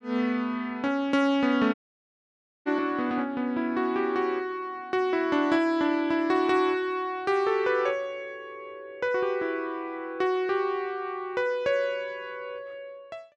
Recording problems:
audio cutting out; at 1.5 s for 1 s

